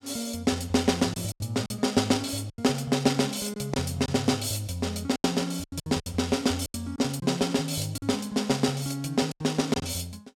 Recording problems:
lost packets; 8% of the sound replaced, filled with silence

